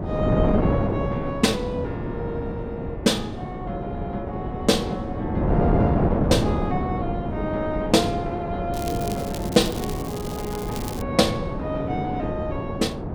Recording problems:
wind noise; below 440 Hz, SNR 0 dB
crackling; from 8.5 to 11 s; loose cable, SNR 12 dB

